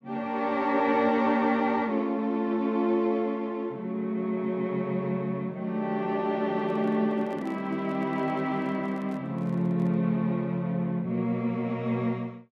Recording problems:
handling noise; from 6.5 to 10 s; peak -12 dB vs average level

